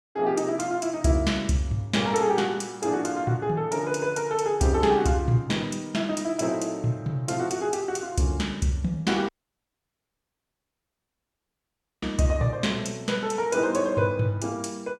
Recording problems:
dropout; at 9.5 s for 2.5 s

